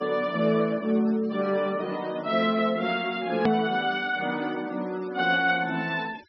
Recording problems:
low-pass filter; nothing above 5.5 kHz
noise reduction artefacts; signal-to-artefact ratio 22 dB
hard cut with a click; at 3.5 s

